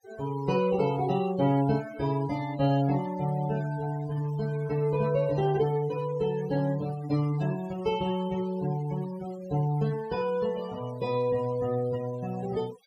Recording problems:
noise reduction artefacts; signal-to-artefact ratio 17 dB

